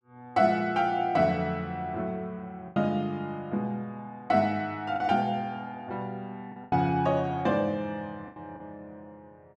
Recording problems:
lost packets; 4% of the sound replaced, filled with the last packet

